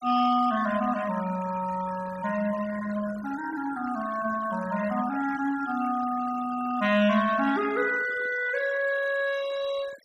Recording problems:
denoising artefacts; signal-to-artefact ratio 16 dB

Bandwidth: 15 kHz